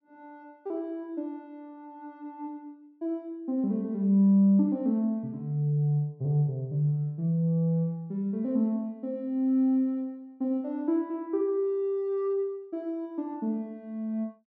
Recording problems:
none

